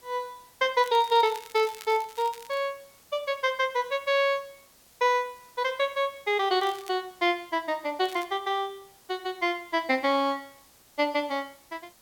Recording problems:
background hiss; slope -2 dB per octave, SNR 28 dB
crackling; from 1 to 2.5 s, at 6.5 s and at 8 s; loose cable, SNR 20 dB

